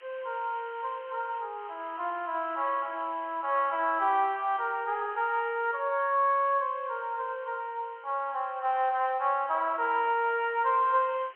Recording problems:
telephone audio; 300 Hz to 3.2 kHz, G.711
background hiss; SNR 27 dB

